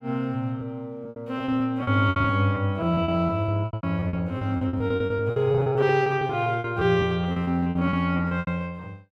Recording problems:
packet loss; 19% of the sound replaced, filled with repeated pitch periods

